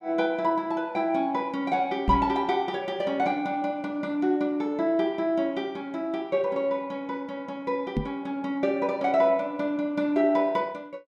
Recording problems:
knock on the microphone; at 2 s and at 8 s; peak +3 dB vs average level

